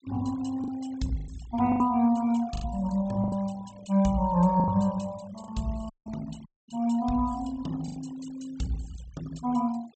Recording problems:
low-pass filter; nothing above 8 kHz
denoising artefacts; signal-to-artefact ratio 21 dB
lost packets; 7% of the sound replaced, filled with the last packet
dropout; at 6 s and at 6.5 s

